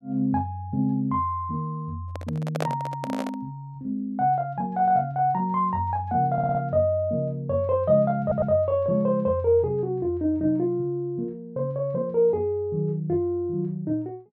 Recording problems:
handling noise; from 2 to 3.5 s; peak +1 dB vs average level
stutter; at 6.5 s and at 8 s

